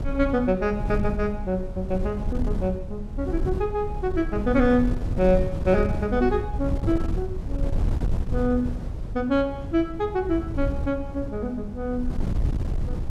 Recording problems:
wind on the microphone; below 110 Hz, SNR 5 dB

